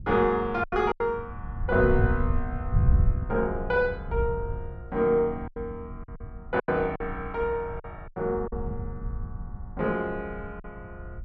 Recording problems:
wind noise; below 100 Hz, SNR 5 dB
lost packets; 6% of the sound replaced, filled with silence

